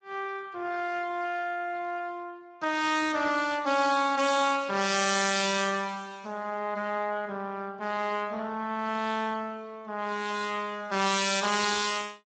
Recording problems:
codec artefacts; Speex, log-spectral distance 5 dB, nothing above 8 kHz

